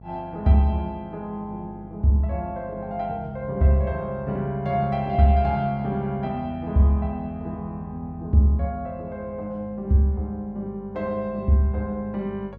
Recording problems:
hum; 50 Hz, harmonics up to 700 Hz, SNR 20 dB

